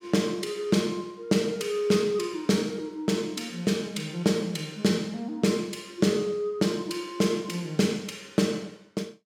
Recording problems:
none

